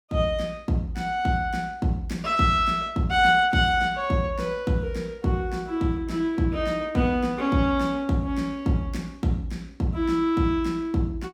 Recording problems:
none

